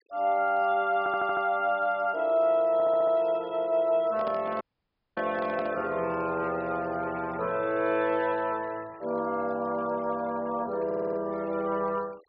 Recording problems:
low-pass filter; nothing above 5.5 kHz
noise reduction artefacts; signal-to-artefact ratio 27 dB
stutter; at 1 s, at 2.5 s and at 11 s
handling noise; from 4 to 5.5 s; peak -7 dB vs average level
dropout; at 4.5 s for 0.5 s

